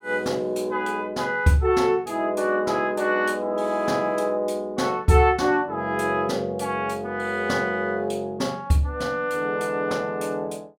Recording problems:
none

